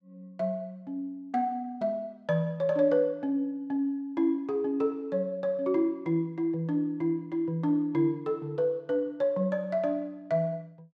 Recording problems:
none

